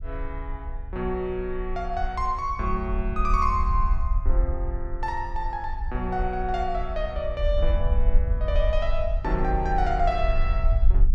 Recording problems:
rumble; below 56 Hz, SNR 0 dB

